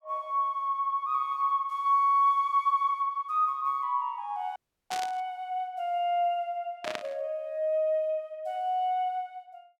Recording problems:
audio cutting out; at 4.5 s
static burst; at 5 s and at 7 s; peak -2 dB vs average level

